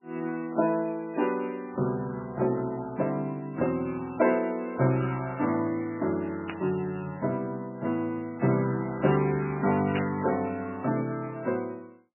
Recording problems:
codec artefacts; MP3, log-spectral distance 3 dB, nothing above 2.7 kHz
burst of static; at 6.5 s and at 10 s; peak -3 dB vs average level

